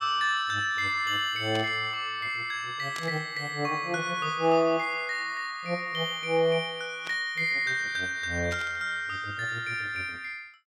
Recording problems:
burst of static; 4 times, first at 1.5 s; peak -6 dB vs average level

